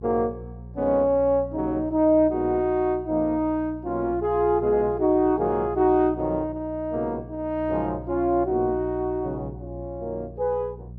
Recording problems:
hum; 60 Hz, harmonics up to 420 Hz, SNR 16 dB

